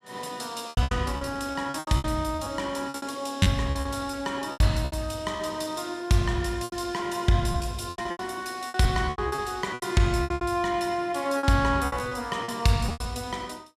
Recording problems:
packet loss; 15% of the sound replaced, filled with repeated pitch periods

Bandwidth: 14.5 kHz